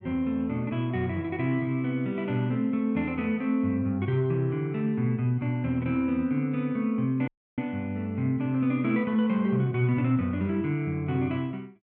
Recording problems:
dropout; at 7.5 s

